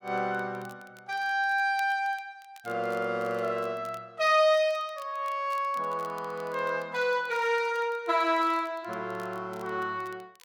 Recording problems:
crackling; vinyl, SNR 27 dB

